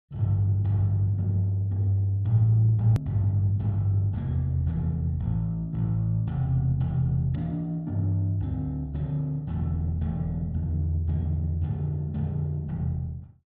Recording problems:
click at an edit; at 3 s

